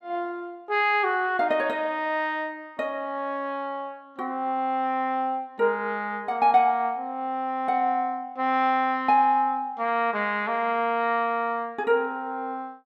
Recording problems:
none

